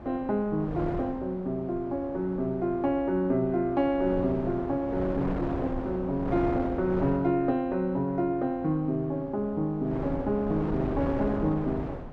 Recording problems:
wind noise; below 600 Hz, SNR 9 dB

